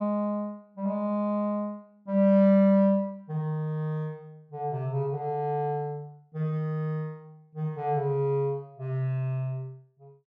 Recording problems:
none

